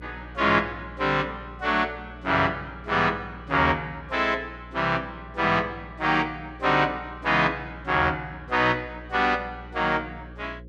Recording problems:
hum; 60 Hz, harmonics up to 540 Hz, SNR 19 dB

